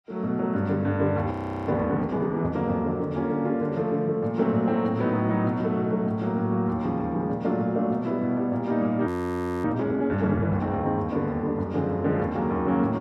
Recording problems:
audio freezing; at 1.5 s and at 9 s for 0.5 s

